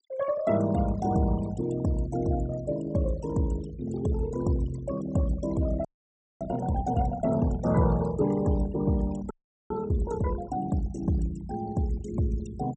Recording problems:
treble cut off; nothing above 8 kHz
denoising artefacts; signal-to-artefact ratio 17 dB
frozen audio; at 6 s for 0.5 s and at 9.5 s

